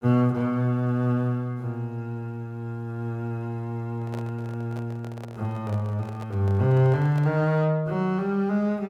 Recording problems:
microphone handling noise; from 4 to 7.5 s; peak -10 dB vs average level

